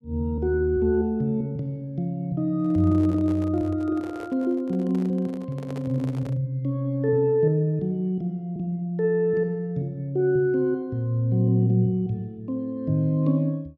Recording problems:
microphone handling noise; from 2.5 to 6.5 s; peak -10 dB vs average level

